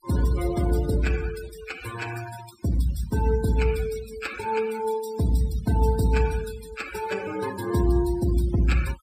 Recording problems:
denoising artefacts; signal-to-artefact ratio 13 dB

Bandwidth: 15 kHz